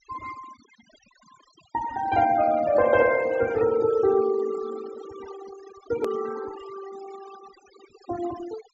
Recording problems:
treble cut off; nothing above 8 kHz
noise reduction artefacts; signal-to-artefact ratio 17 dB
edit click; at 6 s

